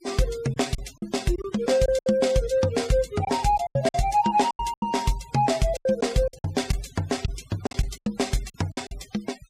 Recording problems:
denoising artefacts; signal-to-artefact ratio 19 dB
lost packets; 10% of the sound replaced, filled with silence

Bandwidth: 15.5 kHz